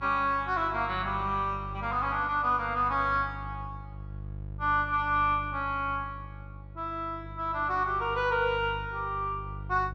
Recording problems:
hum; 50 Hz, harmonics up to 500 Hz, SNR 13 dB

